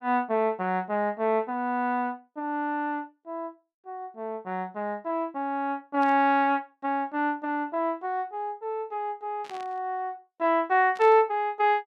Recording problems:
static burst; at 6 s, at 9.5 s and at 11 s; peak -13 dB vs average level

